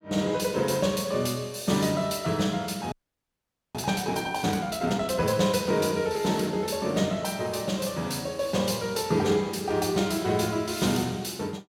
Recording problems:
frozen audio; at 3 s for 1 s

